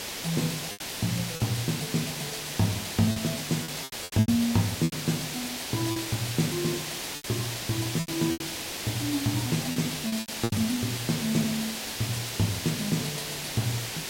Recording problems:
background hiss; SNR 3 dB
crackling; vinyl, SNR 26 dB
lost packets; 7% of the sound replaced, filled with repeated pitch periods

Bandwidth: 16 kHz